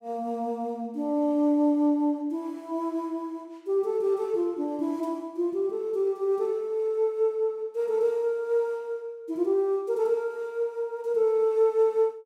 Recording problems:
none

